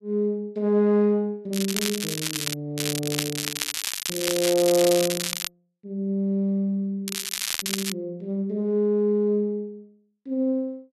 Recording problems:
crackle; at 1.5 s, from 3 to 5.5 s and at 7 s; loose cable, SNR 3 dB

